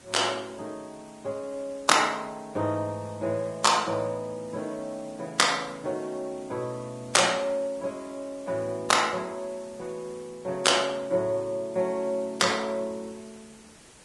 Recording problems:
lossy compression; Vorbis, log-spectral distance 6 dB, nothing above 10.7 kHz
background hiss; slope -3 dB per octave, SNR 23 dB

